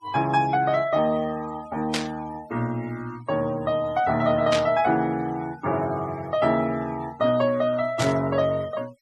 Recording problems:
noise reduction artefacts; signal-to-artefact ratio 21 dB
static burst; at 2 s, at 4.5 s and at 8 s; peak +2 dB vs average level

